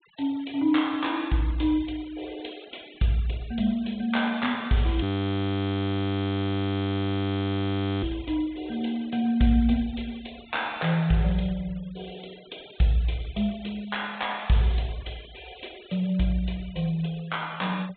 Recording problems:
treble cut off; nothing above 4 kHz
denoising artefacts; signal-to-artefact ratio 22 dB
frozen audio; at 5 s for 3 s

